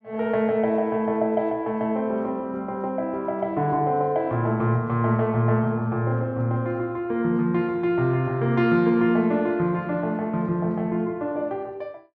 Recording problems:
none

